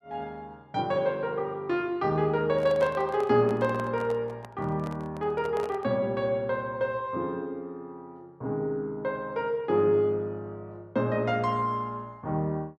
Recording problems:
microphone handling noise; from 2.5 to 6 s; peak -7 dB vs average level

